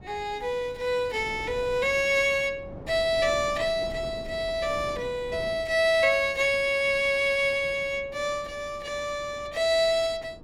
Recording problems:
wind noise; below 420 Hz, SNR 19 dB

